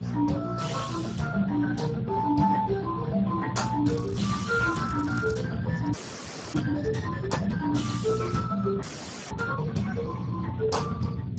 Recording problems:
lossy compression; Speex, then Speex, log-spectral distance 6 dB, nothing above 7.6 kHz
hum; 60 Hz, harmonics up to 480 Hz, SNR 5 dB
wind on the microphone; below 160 Hz, SNR 11 dB
crackling; from 4 to 5.5 s; loose cable, SNR 20 dB
audio freezing; at 6 s for 0.5 s and at 9 s

